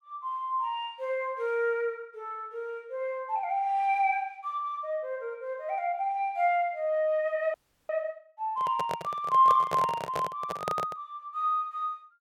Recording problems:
audio freezing; at 7.5 s
handling noise; from 8.5 to 11 s; peak +1 dB vs average level

